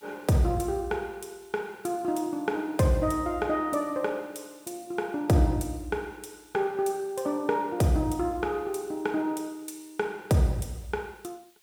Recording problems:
background hiss; slope +2 dB per octave, SNR 30 dB

